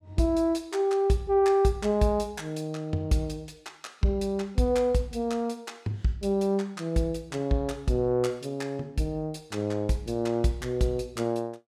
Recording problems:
none

